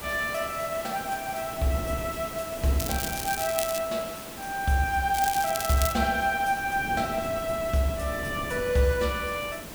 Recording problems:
hiss; slope -4 dB per octave, SNR 12 dB
wind on the microphone; below 370 Hz, SNR 15 dB
crackling; at 3 s and at 5 s; loose cable, SNR 5 dB

